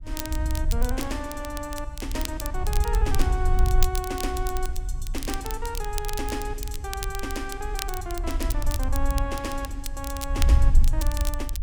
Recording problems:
wind on the microphone; below 62 Hz, SNR -4 dB
crackle; vinyl, SNR 5 dB

